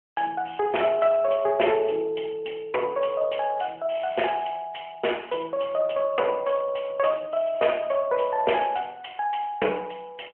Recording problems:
telephone audio; 300 Hz to 3.2 kHz, AMR-NB

